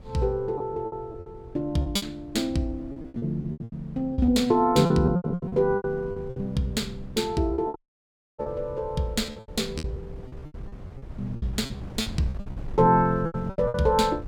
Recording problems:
wind noise; below 150 Hz, SNR 16 dB
lost packets; 16% of the sound replaced, filled with repeated pitch periods
dropout; at 8 s for 0.5 s

